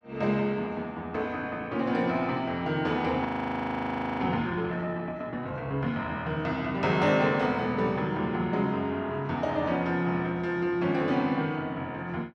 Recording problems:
audio freezing; at 3.5 s for 1 s

